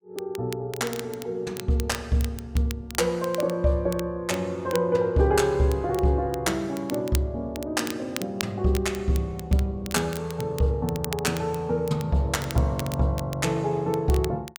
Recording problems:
crackling; vinyl, SNR 15 dB

